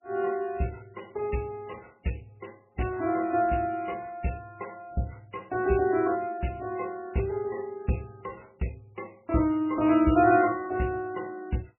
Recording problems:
lossy codec; MP3, log-spectral distance 4 dB, nothing above 2.8 kHz

